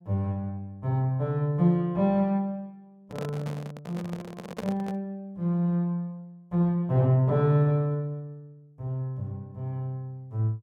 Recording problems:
microphone handling noise; from 3 to 5 s; peak -3 dB vs average level

